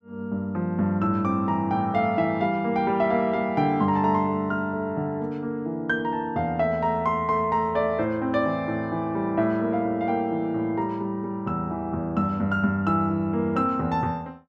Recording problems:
none

